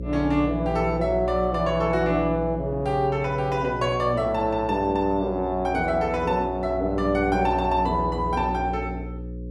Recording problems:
electrical hum; 60 Hz, harmonics up to 540 Hz, SNR 10 dB

